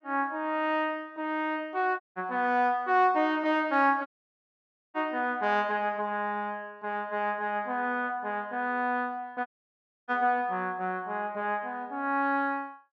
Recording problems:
dropout; at 2 s, at 4 s for 1 s and at 9.5 s for 0.5 s

